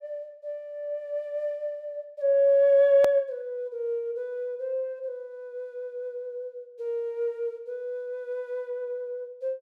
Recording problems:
edit click; at 3 s

